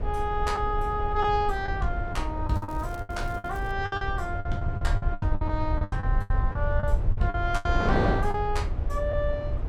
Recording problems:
rumble; below 82 Hz, SNR 1 dB
wind noise; below 650 Hz, SNR 6 dB
lost packets; 12% of the sound replaced, filled with the last packet
crackling; from 2.5 to 3.5 s; loose cable, SNR 25 dB

